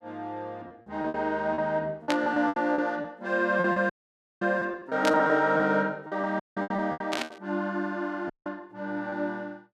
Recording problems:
packet loss; 11% of the sound replaced, filled with repeated pitch periods
burst of static; at 2 s, at 5 s and at 7 s; peak +3 dB vs average level
dropout; at 4 s for 0.5 s, at 6.5 s and at 8.5 s

